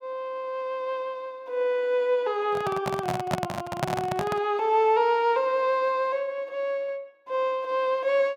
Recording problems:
handling noise; from 2.5 to 4.5 s; peak +4 dB vs average level

